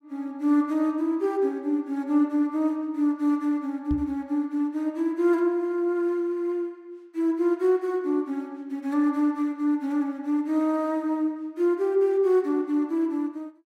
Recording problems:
microphone thump; at 4 s; peak -2 dB vs average level

